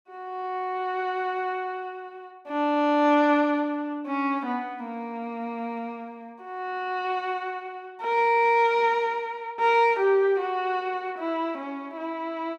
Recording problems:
none

